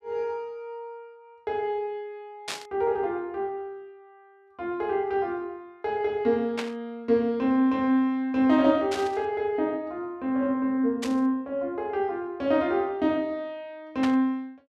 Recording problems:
static burst; 5 times, first at 2.5 s; peak -1 dB vs average level

